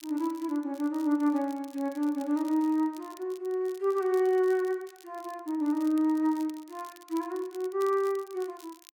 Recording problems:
crackling; vinyl, SNR 25 dB

